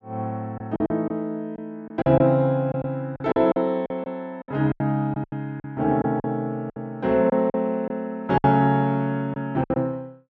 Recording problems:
lost packets; 11% of the sound replaced, filled with silence

